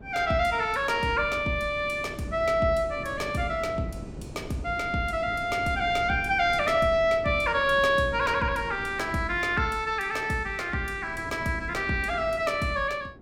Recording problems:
wind on the microphone; below 350 Hz, SNR 16 dB

